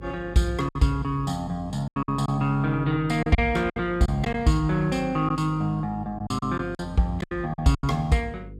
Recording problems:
hum; 50 Hz, harmonics up to 500 Hz, SNR 17 dB
lost packets; 8% of the sound replaced, filled with silence

